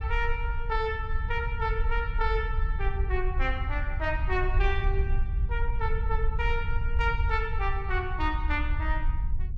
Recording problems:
low-frequency rumble; below 64 Hz, SNR -1 dB

